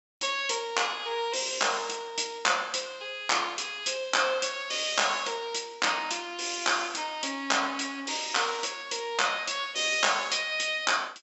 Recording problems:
low-pass filter; nothing above 7.8 kHz

